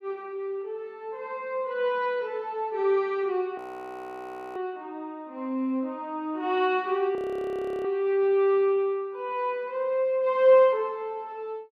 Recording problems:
frozen audio; at 3.5 s for 1 s and at 7 s for 0.5 s

